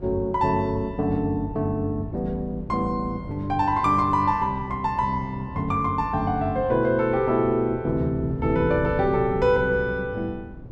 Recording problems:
wind noise; below 230 Hz, SNR 15 dB

